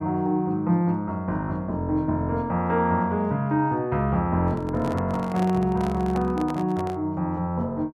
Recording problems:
microphone handling noise; from 4.5 to 7 s; peak -6 dB vs average level

